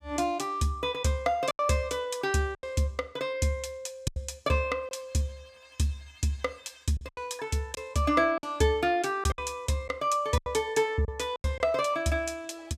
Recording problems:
packet loss; 6% of the sound replaced, filled with silence

